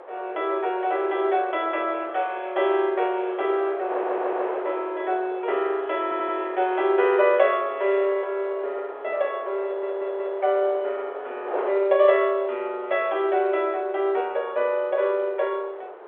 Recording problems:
phone line; 340 Hz to 4 kHz, G.711
wind noise; below 910 Hz, SNR 13 dB
audio stuttering; at 4 s, at 6 s and at 9.5 s

